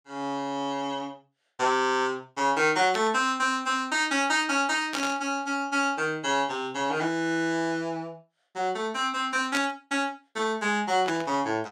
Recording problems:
burst of static; 4 times, first at 3 s; peak 0 dB vs average level

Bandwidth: 17 kHz